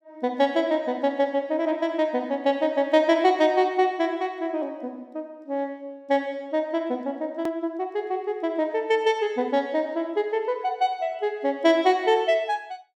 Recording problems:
edit click; at 7.5 s

